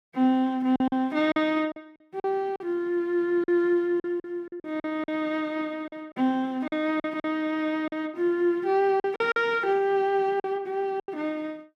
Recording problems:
packet loss; 9% of the sound replaced, filled with silence

